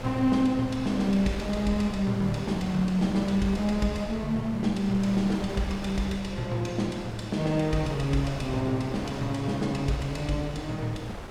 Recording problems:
wind noise; below 870 Hz, SNR 11 dB

